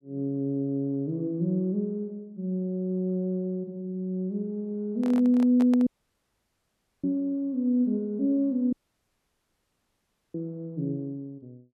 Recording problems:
microphone handling noise; at 5 s; peak -6 dB vs average level
audio cutting out; at 6 s for 1 s and at 8.5 s for 1.5 s

